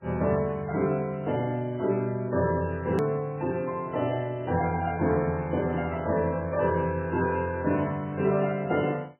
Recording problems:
codec artefacts; MP3, log-spectral distance 3 dB, nothing above 13.1 kHz
hard cut with a click; at 3 s

